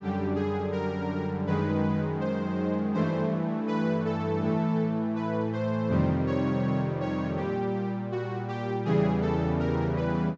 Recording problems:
treble cut off; nothing above 8 kHz

